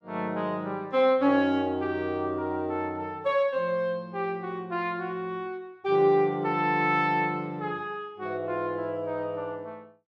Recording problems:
none

